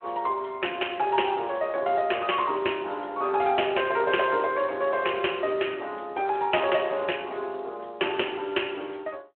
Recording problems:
telephone audio; 300 Hz to 3.3 kHz, Speex

